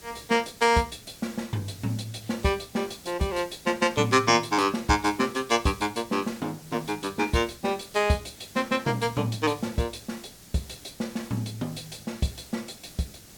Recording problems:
hiss; SNR 19 dB

